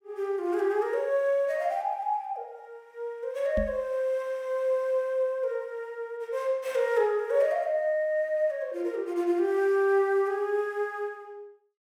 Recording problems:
microphone thump; at 3.5 s; peak -1 dB vs average level

